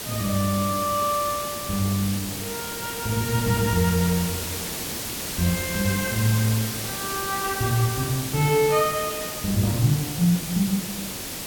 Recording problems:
background hiss; slope -2 dB per octave, SNR 5 dB

